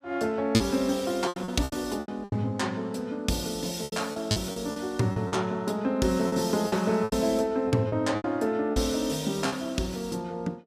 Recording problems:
packet loss; 11% of the sound replaced, filled with repeated pitch periods

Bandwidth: 15 kHz